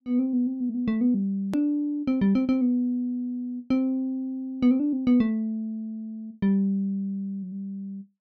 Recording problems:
edit click; at 1.5 s

